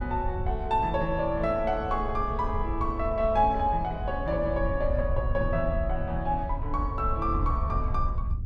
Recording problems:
wind on the microphone; below 78 Hz, SNR 5 dB

